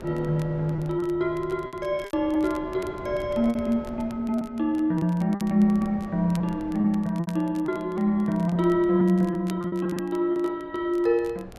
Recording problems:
wind on the microphone; below 540 Hz, SNR 19 dB
crackle; vinyl, SNR 26 dB
lost packets; 8% of the sound replaced, filled with repeated pitch periods

